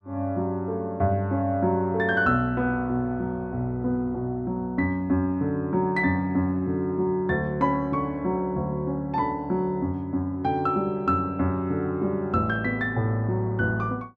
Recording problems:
none

